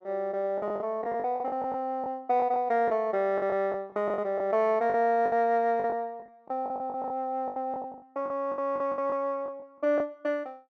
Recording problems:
packet loss; 14% of the sound replaced, filled with the last packet

